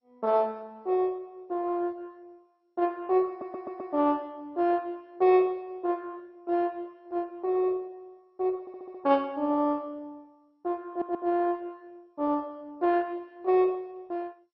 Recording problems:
lossy compression; MP2, log-spectral distance 2 dB, nothing above 4.5 kHz
audio stuttering; at 3.5 s, at 8.5 s and at 11 s

